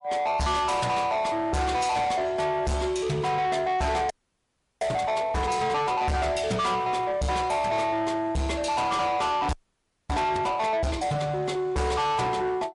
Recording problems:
lossy compression; MP3, log-spectral distance 2 dB, nothing above 11 kHz
distorted audio; soft clipping, signal-to-distortion ratio 7 dB
frozen audio; at 4 s for 0.5 s and at 9.5 s for 0.5 s

